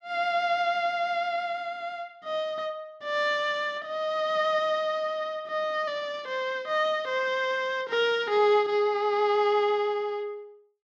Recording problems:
none

